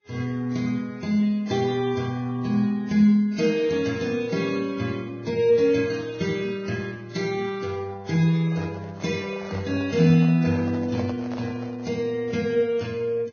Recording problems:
lossy compression; Vorbis, then AAC, log-spectral distance 3 dB, nothing above 6.3 kHz
handling noise; from 8.5 to 12 s; peak -8 dB vs average level

